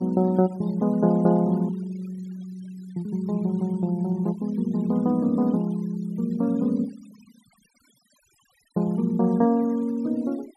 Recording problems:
denoising artefacts; signal-to-artefact ratio 28 dB

